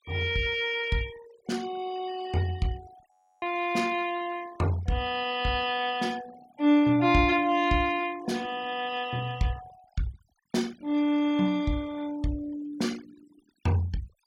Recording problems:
noise reduction artefacts; signal-to-artefact ratio 21 dB
frozen audio; at 3 s

